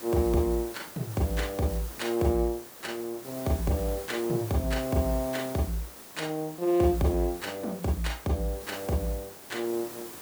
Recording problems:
background hiss; slope -4 dB per octave, SNR 13 dB

